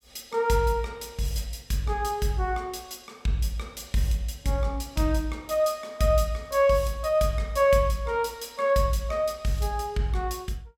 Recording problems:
none

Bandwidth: 17.5 kHz